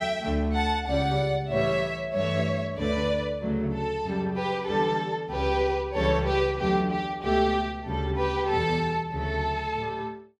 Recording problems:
none

